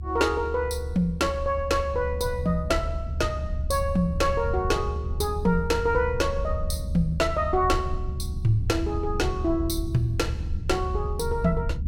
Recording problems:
low-frequency rumble; below 78 Hz, SNR 5 dB

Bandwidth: 17 kHz